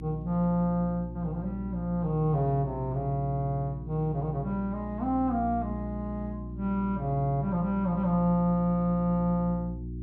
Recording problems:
electrical hum; 60 Hz, harmonics up to 360 Hz, SNR 10 dB

